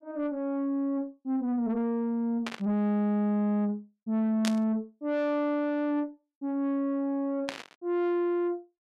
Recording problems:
distortion; soft clipping, signal-to-distortion ratio 10 dB
burst of static; at 2.5 s, at 4.5 s and at 7.5 s; peak 0 dB vs average level

